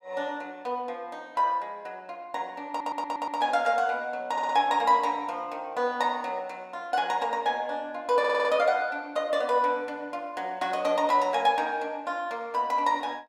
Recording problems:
stutter; at 2.5 s, at 4.5 s and at 8 s

